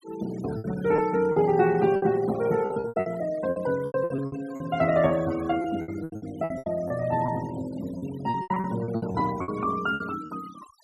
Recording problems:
denoising artefacts; signal-to-artefact ratio 18 dB
lost packets; 16% of the sound replaced, filled with repeated pitch periods

